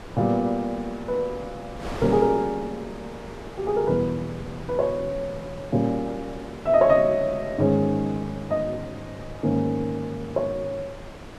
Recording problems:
wind noise; below 1 kHz, SNR 15 dB

